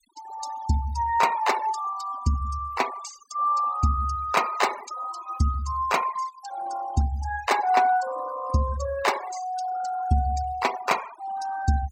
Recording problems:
denoising artefacts; signal-to-artefact ratio 13 dB

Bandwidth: 16.5 kHz